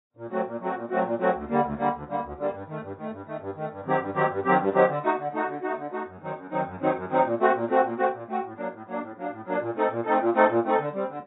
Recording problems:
lossy codec; AAC, log-spectral distance 2 dB, nothing above 3.8 kHz

